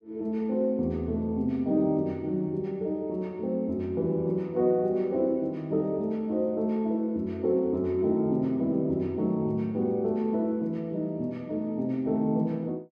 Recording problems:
none

